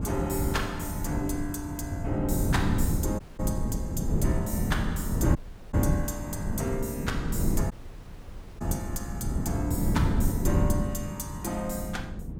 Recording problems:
wind on the microphone; below 200 Hz, SNR -3 dB
dropout; at 3 s, at 5.5 s and at 7.5 s for 1 s

